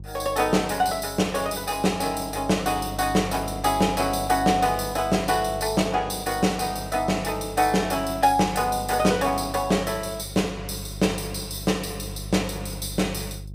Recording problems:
hum; 50 Hz, harmonics up to 400 Hz, SNR 14 dB

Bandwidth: 15.5 kHz